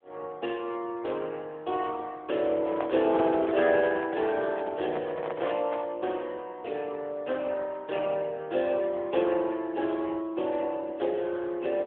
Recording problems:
phone line; 280 Hz to 3.5 kHz, AMR-NB
handling noise; from 2.5 to 6 s; peak -4 dB vs average level

